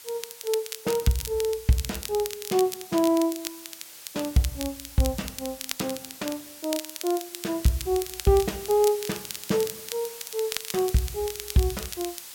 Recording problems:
background hiss; slope +2 dB per octave, SNR 13 dB
crackling; vinyl, SNR 9 dB

